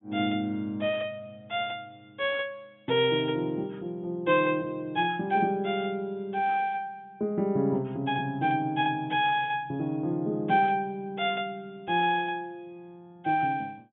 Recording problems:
treble missing; nothing above 3.6 kHz

